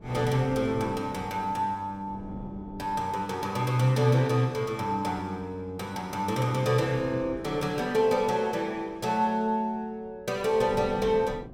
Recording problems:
wind on the microphone; below 360 Hz, SNR 18 dB

